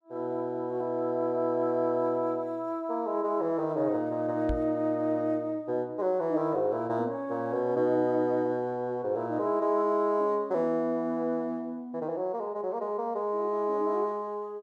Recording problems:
microphone bump; at 4.5 s; peak -1 dB vs average level

